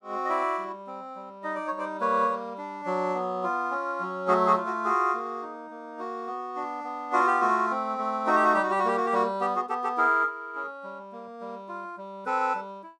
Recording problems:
none

